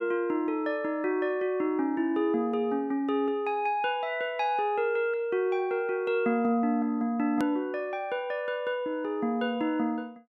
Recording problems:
hard cut with a click; at 7.5 s

